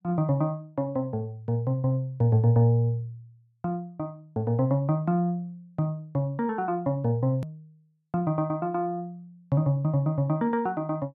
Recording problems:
edit click; at 7.5 s

